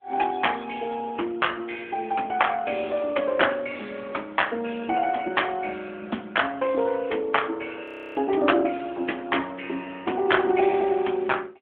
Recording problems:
phone line; 220 Hz to 3.4 kHz, AMR-NB
audio freezing; at 8 s

